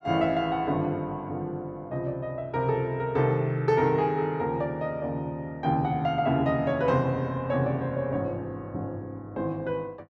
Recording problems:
none

